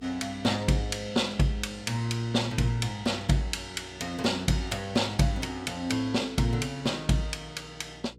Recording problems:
hum; 60 Hz, harmonics up to 480 Hz, SNR 24 dB

